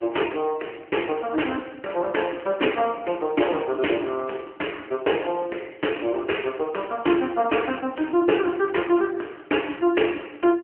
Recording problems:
telephone audio; 260 Hz to 3.1 kHz, AMR-NB

